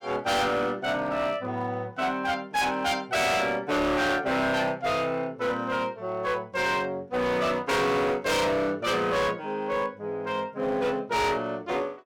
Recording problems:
distorted audio; hard clipping, signal-to-distortion ratio 7 dB

